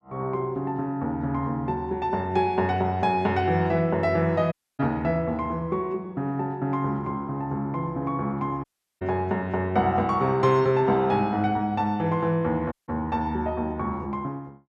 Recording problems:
dropout; at 4.5 s, at 8.5 s and at 13 s

